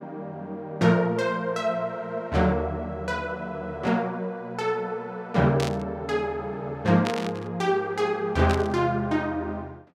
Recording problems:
static burst; at 5.5 s, at 7 s and at 8.5 s; peak -1 dB vs average level

